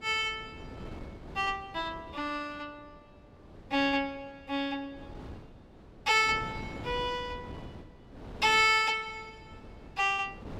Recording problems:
wind on the microphone; below 480 Hz, SNR 18 dB

